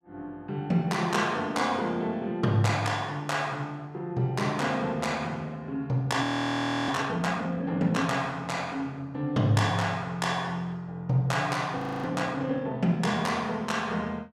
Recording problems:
audio freezing; at 6 s for 0.5 s and at 12 s

